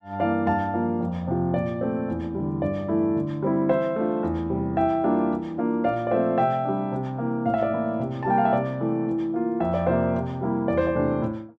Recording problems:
none

